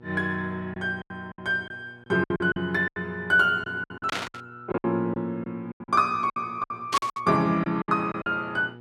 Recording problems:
electrical hum; 60 Hz, harmonics up to 1.4 kHz, SNR 22 dB
lost packets; 14% of the sound replaced, filled with silence
static burst; at 4 s and at 7 s; peak +1 dB vs average level

